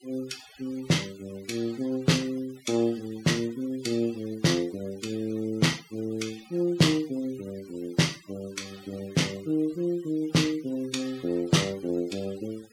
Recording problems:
denoising artefacts; signal-to-artefact ratio 20 dB

